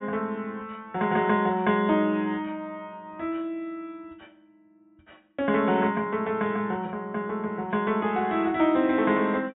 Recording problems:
low-pass filter; nothing above 4 kHz

